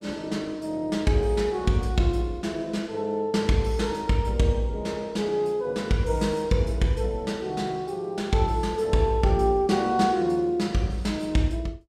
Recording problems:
none

